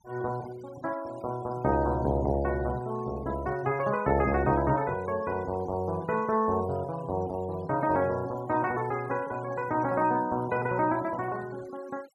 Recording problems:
denoising artefacts; signal-to-artefact ratio 20 dB

